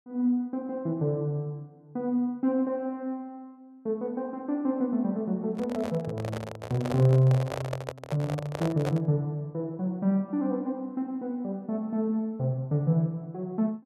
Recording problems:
microphone handling noise; from 5.5 to 9 s; peak -1 dB vs average level

